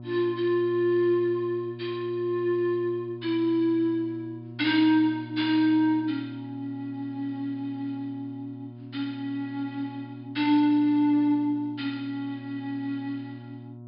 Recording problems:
treble missing; nothing above 5.5 kHz
hum; 60 Hz, harmonics up to 720 Hz, SNR 16 dB

